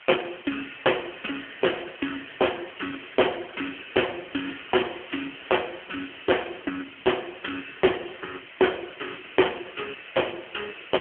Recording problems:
phone line; 280 Hz to 3.2 kHz, AMR-NB
distortion; hard clipping, signal-to-distortion ratio 15 dB
hiss; SNR 16 dB

